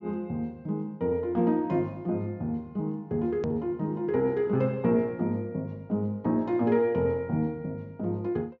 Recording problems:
treble cut off; nothing above 7 kHz
edit click; at 3.5 s

